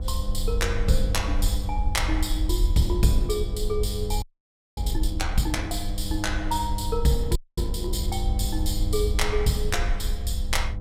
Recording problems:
mains hum; 50 Hz, harmonics up to 1 kHz, SNR 8 dB
low-frequency rumble; below 58 Hz, SNR 2 dB
wind on the microphone; below 120 Hz, SNR 14 dB
frozen audio; at 4 s for 0.5 s and at 7.5 s

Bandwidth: 16 kHz